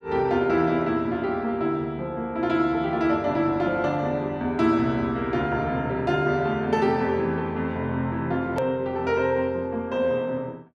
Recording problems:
click at an edit; at 8.5 s

